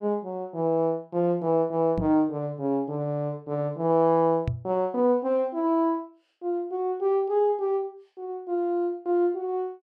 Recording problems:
microphone bump; at 2 s and at 4.5 s; peak +1 dB vs average level

